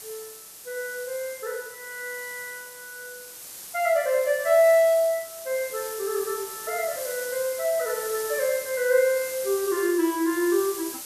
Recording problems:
hiss; SNR 11 dB

